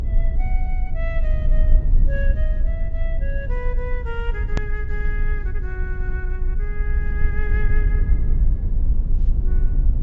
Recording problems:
low-pass filter; nothing above 8 kHz
low-frequency rumble; below 54 Hz, strongest tone 26 Hz, SNR -11 dB
edit click; at 4.5 s

